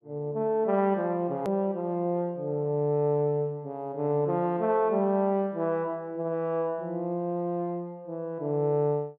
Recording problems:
hard cut with a click; at 1.5 s

